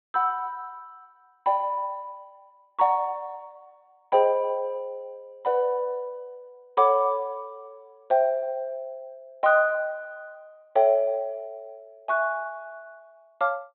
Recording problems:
treble missing; nothing above 4 kHz

